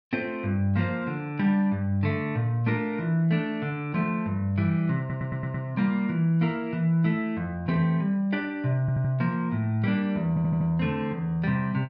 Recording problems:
audio stuttering; at 5 s, at 9 s and at 10 s

